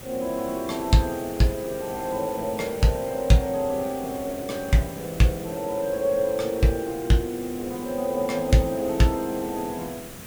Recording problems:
hiss; SNR 14 dB

